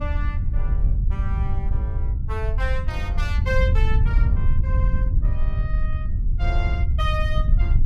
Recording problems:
wind on the microphone; below 78 Hz, SNR -9 dB

